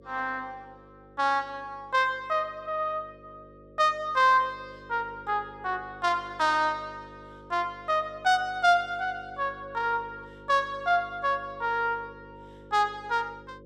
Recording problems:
hum; 50 Hz, harmonics up to 550 Hz, SNR 22 dB

